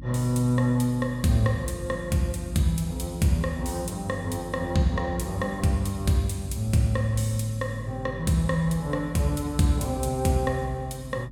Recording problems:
hum; 50 Hz, harmonics up to 300 Hz, SNR 15 dB

